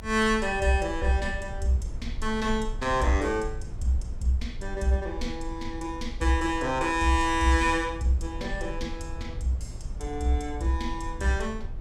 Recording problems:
low-frequency rumble; below 64 Hz, strongest tone 22 Hz, SNR 11 dB

